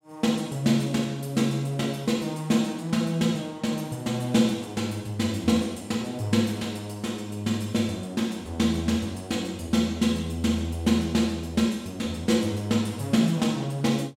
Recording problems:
none

